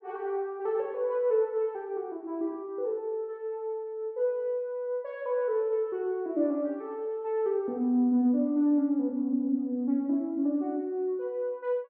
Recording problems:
none

